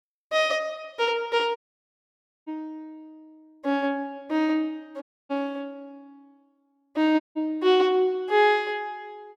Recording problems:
audio cutting out; at 1.5 s for 1 s, at 5 s and at 7 s

